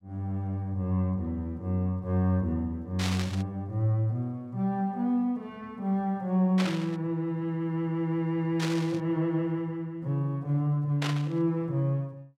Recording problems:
static burst; 4 times, first at 3 s; peak 0 dB vs average level

